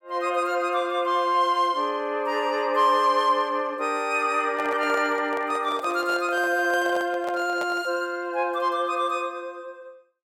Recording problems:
handling noise; from 4.5 to 8 s; peak -5 dB vs average level

